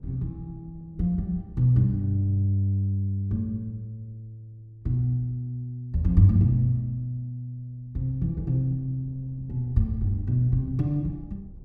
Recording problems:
wind noise; below 140 Hz, SNR 23 dB

